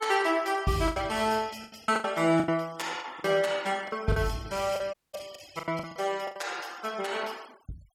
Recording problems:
noise reduction artefacts; signal-to-artefact ratio 22 dB
packet loss; 12% of the sound replaced, filled with the last packet
audio cutting out; at 5 s

